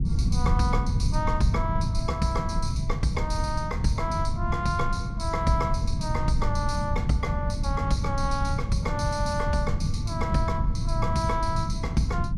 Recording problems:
low-frequency rumble; below 130 Hz, SNR -1 dB

